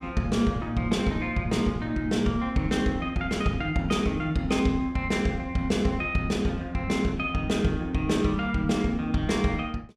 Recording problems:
none

